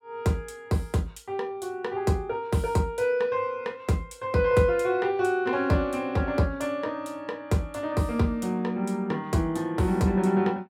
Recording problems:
none

